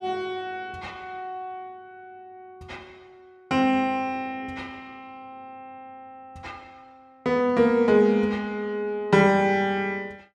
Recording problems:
none

